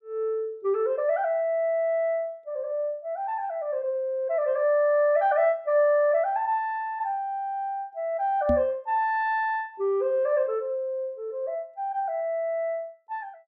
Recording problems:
microphone thump; at 8.5 s; peak +1 dB vs average level

